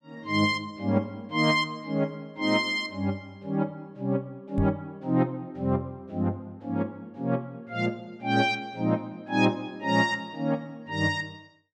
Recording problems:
microphone bump; at 4.5 s; peak +3 dB vs average level

